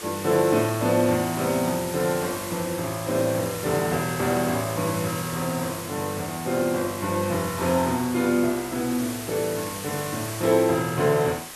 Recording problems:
hiss; slope -1 dB per octave, SNR 10 dB

